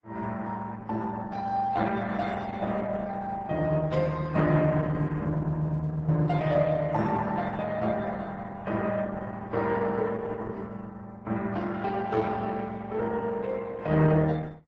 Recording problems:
lossy compression; AAC, then Opus, log-spectral distance 3 dB, nothing above 7.6 kHz

